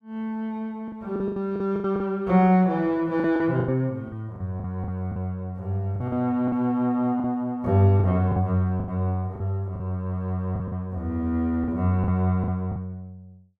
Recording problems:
lost packets; 10% of the sound replaced, filled with the last packet

